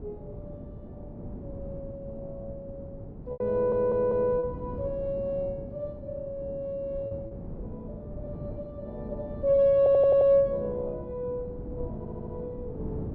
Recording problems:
wind noise; below 280 Hz, SNR 14 dB
packet loss; 1.8% of the sound replaced, filled with repeated pitch periods
stutter; at 3.5 s, at 10 s and at 12 s

